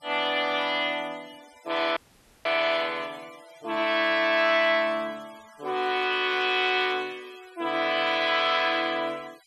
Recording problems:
denoising artefacts; signal-to-artefact ratio 25 dB
dropout; at 2 s

